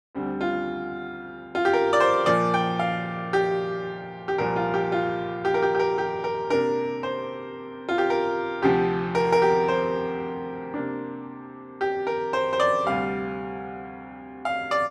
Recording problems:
none

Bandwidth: 12.5 kHz